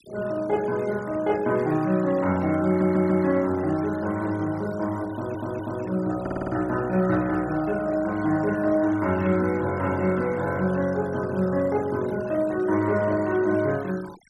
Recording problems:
denoising artefacts; signal-to-artefact ratio 21 dB
stutter; at 2.5 s, at 5 s and at 6 s

